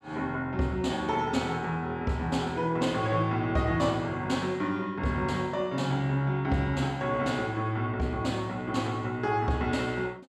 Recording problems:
none

